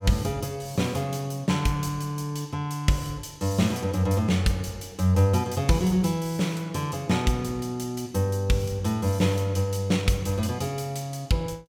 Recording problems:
none

